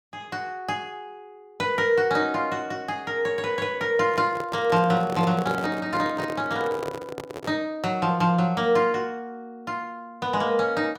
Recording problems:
microphone handling noise; from 4 to 7.5 s; peak -4 dB vs average level

